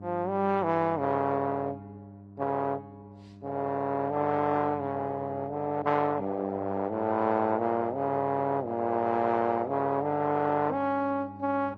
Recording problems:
codec artefacts; AAC, then Opus, log-spectral distance 3 dB
electrical hum; 50 Hz, harmonics up to 800 Hz, SNR 18 dB

